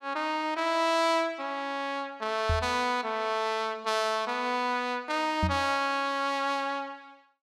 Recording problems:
microphone bump; at 2.5 s and at 5.5 s; peak +3 dB vs average level

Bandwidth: 14.5 kHz